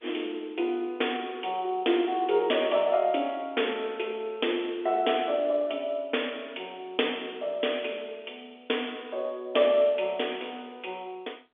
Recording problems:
telephone audio; 280 Hz to 3.5 kHz, G.711

